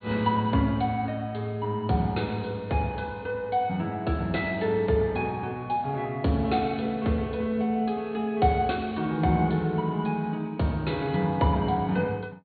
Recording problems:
low-pass filter; nothing above 4.4 kHz

